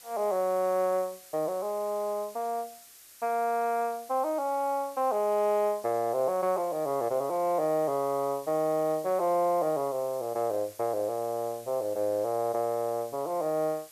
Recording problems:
hiss; slope +2 dB per octave, SNR 20 dB

